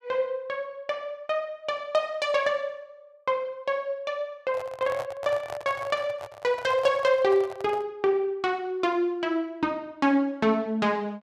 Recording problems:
microphone handling noise; from 4.5 to 8 s; peak -5 dB vs average level

